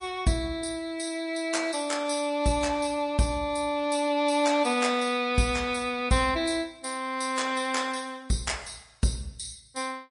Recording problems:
codec artefacts; MP3, log-spectral distance 5 dB, nothing above 10.1 kHz

